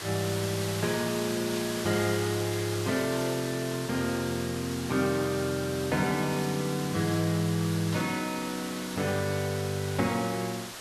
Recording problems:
hiss; slope -1 dB per octave, SNR 7 dB
static burst; at 1.5 s and at 8 s; peak -8 dB vs average level

